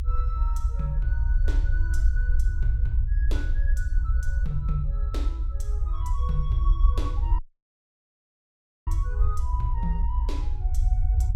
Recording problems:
low-frequency rumble; below 60 Hz, SNR -11 dB
audio cutting out; at 7.5 s for 1.5 s

